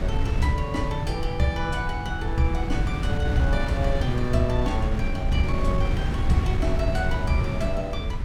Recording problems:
wind on the microphone; below 120 Hz, SNR -1 dB

